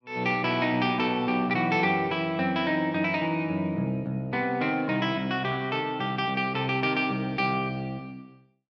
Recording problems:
none

